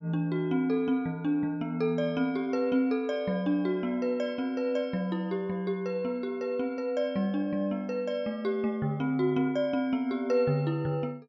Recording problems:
none

